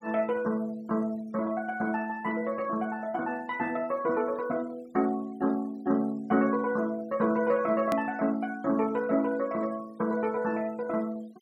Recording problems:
denoising artefacts; signal-to-artefact ratio 26 dB
edit click; at 8 s

